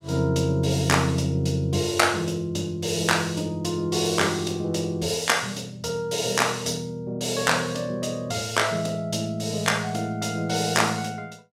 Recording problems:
none

